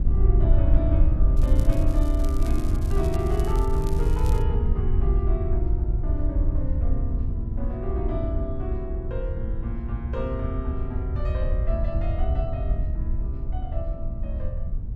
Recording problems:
wind noise; below 72 Hz, SNR -7 dB
crackling; from 1.5 to 4.5 s; loose cable, SNR 14 dB

